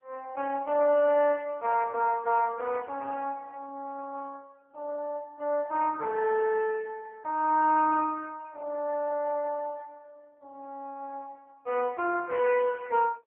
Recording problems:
telephone audio; 300 Hz to 2.9 kHz, AMR-NB

